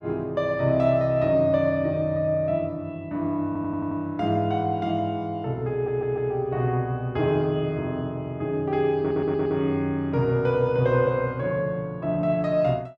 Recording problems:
audio stuttering; at 3.5 s, at 5.5 s and at 9 s

